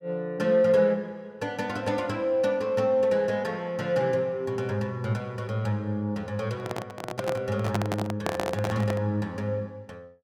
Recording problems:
microphone handling noise; from 6.5 to 9 s; peak +2 dB vs average level

